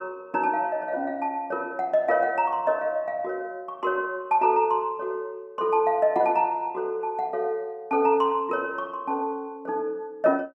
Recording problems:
none

